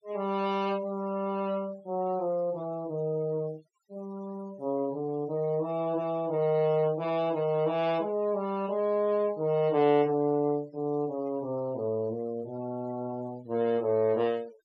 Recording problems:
denoising artefacts; signal-to-artefact ratio 24 dB

